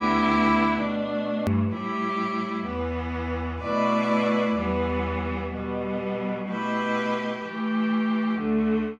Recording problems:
click at an edit; at 1.5 s

